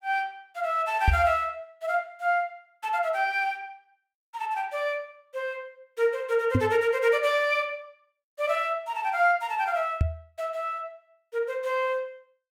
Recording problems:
knock on the microphone; at 1 s, at 6.5 s and at 10 s; peak +8 dB vs average level

